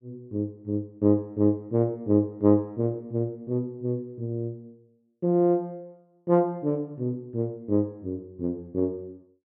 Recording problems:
none

